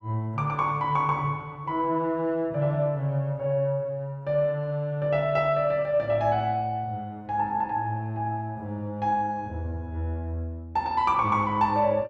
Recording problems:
none

